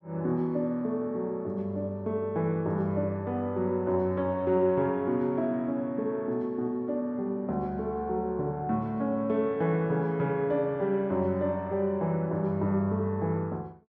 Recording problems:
none

